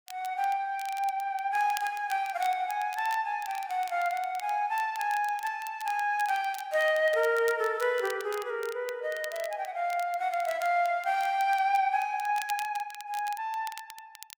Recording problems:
crackle; vinyl, SNR 18 dB

